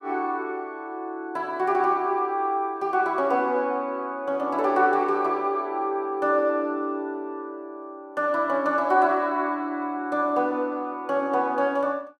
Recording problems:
none

